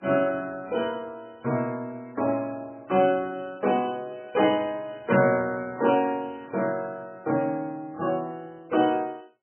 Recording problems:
lossy codec; MP3, log-spectral distance 2 dB, nothing above 2.6 kHz

